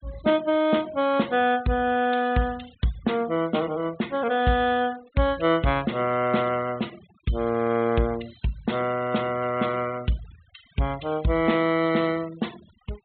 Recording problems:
low-pass filter; nothing above 4 kHz
noise reduction artefacts; signal-to-artefact ratio 21 dB

